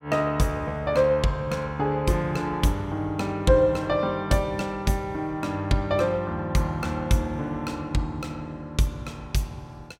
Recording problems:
none

